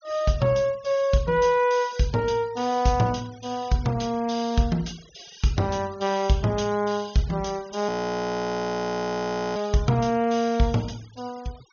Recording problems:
treble missing; nothing above 6.7 kHz
denoising artefacts; signal-to-artefact ratio 23 dB
frozen audio; at 8 s for 1.5 s

